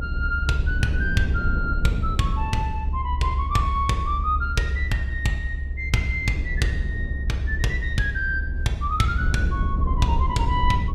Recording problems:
low-frequency rumble; below 72 Hz, SNR 1 dB

